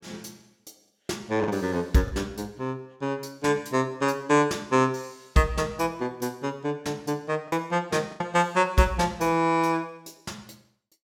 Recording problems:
lost packets; 2% of the sound replaced, filled with the last packet

